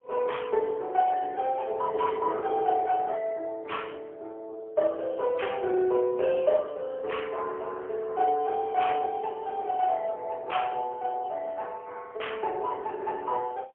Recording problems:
phone line; 320 Hz to 3.3 kHz, AMR-NB, then MP3

